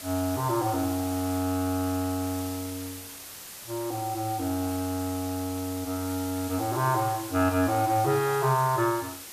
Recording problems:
background hiss; slope 0 dB per octave, SNR 11 dB

